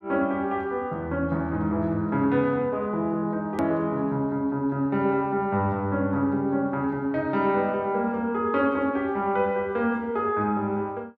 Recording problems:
click at an edit; at 3.5 s

